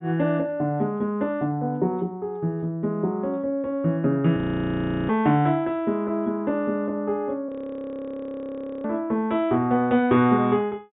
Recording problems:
low-pass filter; nothing above 4 kHz
audio freezing; at 4.5 s for 0.5 s and at 7.5 s for 1.5 s

